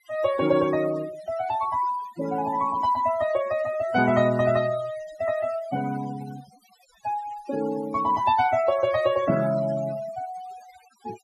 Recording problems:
denoising artefacts; signal-to-artefact ratio 17 dB

